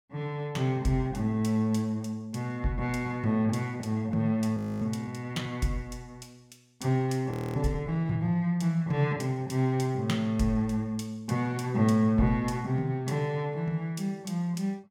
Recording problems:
frozen audio; at 4.5 s and at 7.5 s

